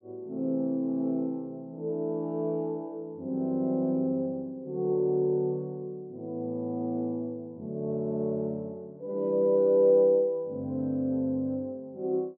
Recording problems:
none

